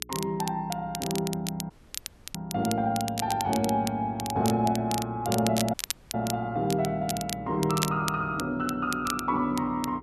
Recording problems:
mains hum; 60 Hz, harmonics up to 420 Hz, SNR 21 dB
crackle; vinyl, SNR 8 dB
audio cutting out; at 1.5 s for 0.5 s and at 5.5 s

